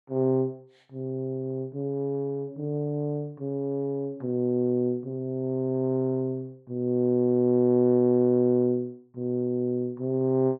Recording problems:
none

